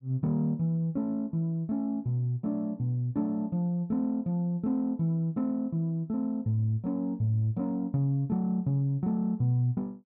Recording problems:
none

